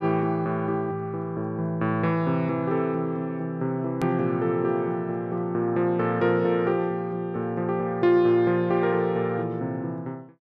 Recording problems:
edit click; at 4 s

